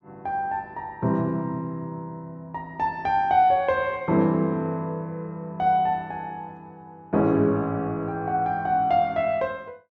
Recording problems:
none

